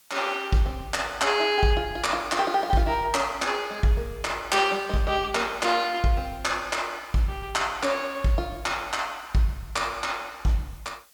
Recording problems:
hiss; slope +2 dB per octave, SNR 27 dB

